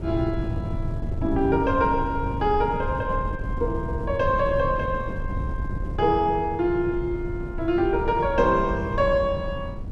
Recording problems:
wind noise; below 140 Hz, SNR 7 dB

